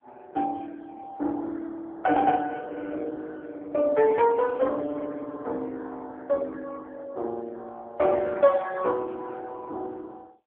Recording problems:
telephone audio; 260 Hz to 3.6 kHz, AMR-NB

